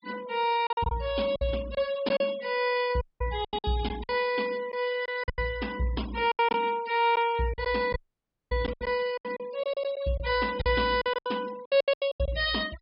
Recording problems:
treble cut off; nothing above 5.5 kHz
noise reduction artefacts; signal-to-artefact ratio 19 dB
packet loss; 12% of the sound replaced, filled with silence
dropout; at 3 s and at 8 s for 0.5 s

